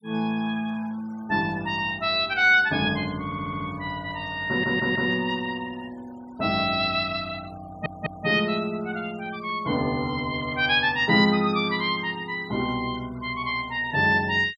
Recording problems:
denoising artefacts; signal-to-artefact ratio 26 dB
audio stuttering; at 3.5 s, at 4.5 s and at 7.5 s

